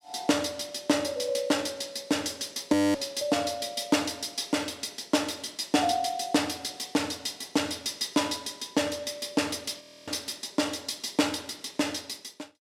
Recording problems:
frozen audio; at 2.5 s and at 10 s

